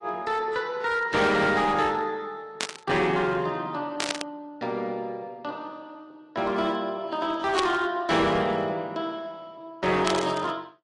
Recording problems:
lossy codec; AAC, log-spectral distance 2 dB, nothing above 10.7 kHz
distorted audio; hard clipping, signal-to-distortion ratio 12 dB
static burst; 4 times, first at 2.5 s; peak +3 dB vs average level

